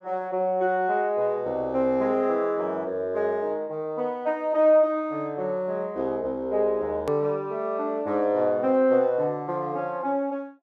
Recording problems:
click at an edit; at 7 s

